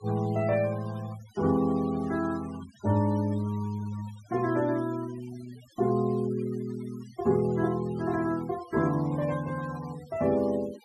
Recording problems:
noise reduction artefacts; signal-to-artefact ratio 21 dB

